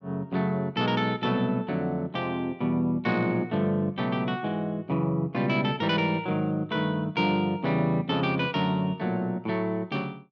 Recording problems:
none

